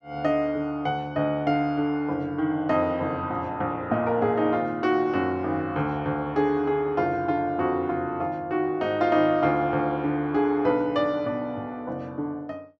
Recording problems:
none

